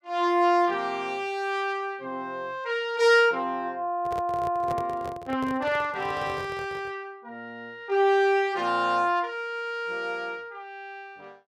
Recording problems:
handling noise; from 4 to 7 s; peak -6 dB vs average level

